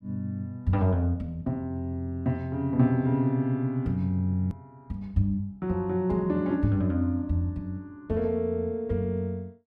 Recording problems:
hard cut with a click; at 4.5 s

